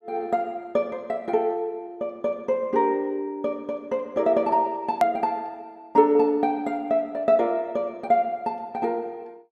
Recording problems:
hard cut with a click; at 5 s

